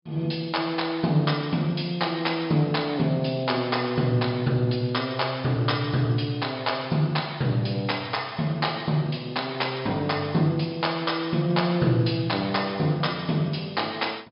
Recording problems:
treble missing; nothing above 5.2 kHz

